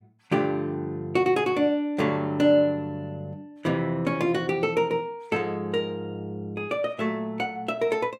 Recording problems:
none

